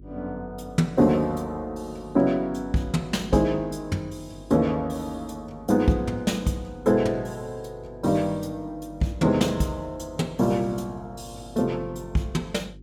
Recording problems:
hum; 50 Hz, harmonics up to 400 Hz, SNR 21 dB

